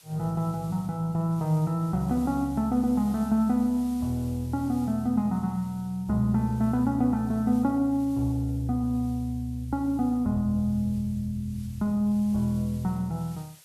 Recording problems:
background hiss; SNR 26 dB

